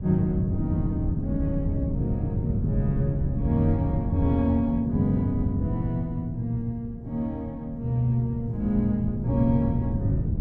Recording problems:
wind on the microphone; below 170 Hz, SNR 3 dB

